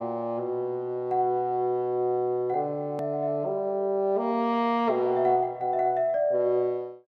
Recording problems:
click at an edit; at 3 s

